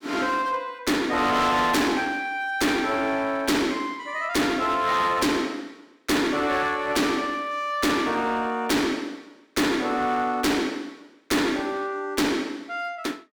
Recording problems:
distorted audio; hard clipping, uneven, signal-to-distortion ratio 6 dB

